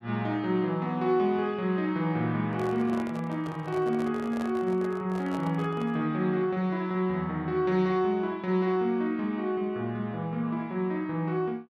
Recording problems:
handling noise; from 2.5 to 6 s; peak -7 dB vs average level

